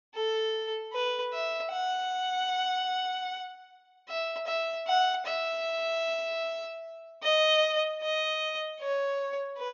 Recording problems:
low-pass filter; nothing above 7 kHz

